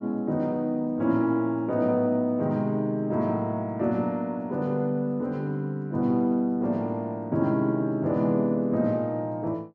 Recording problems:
none

